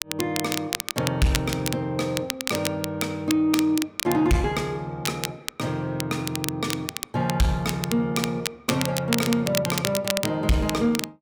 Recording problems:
distortion; soft clipping, signal-to-distortion ratio 10 dB
crackling; vinyl, SNR 5 dB

